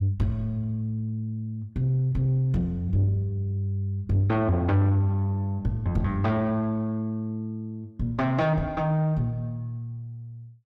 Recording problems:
distortion; soft clipping, signal-to-distortion ratio 11 dB

